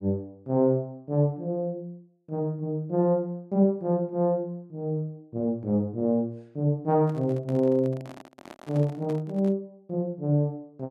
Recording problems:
handling noise; from 7 to 9.5 s; peak -11 dB vs average level

